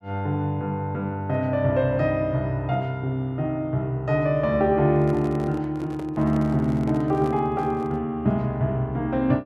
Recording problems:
microphone handling noise; from 5 to 8 s; peak -9 dB vs average level

